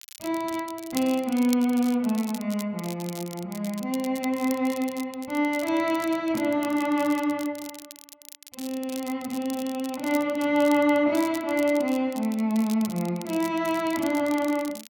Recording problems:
crackle; vinyl, SNR 16 dB

